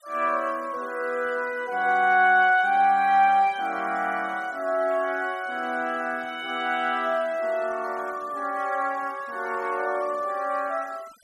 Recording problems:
denoising artefacts; signal-to-artefact ratio 25 dB

